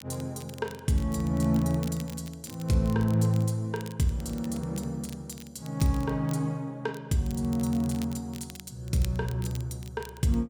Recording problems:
crackling; vinyl, SNR 19 dB

